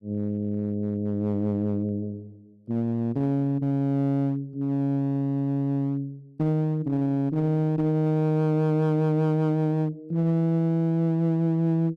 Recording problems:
distortion; hard clipping, uneven, signal-to-distortion ratio 10 dB

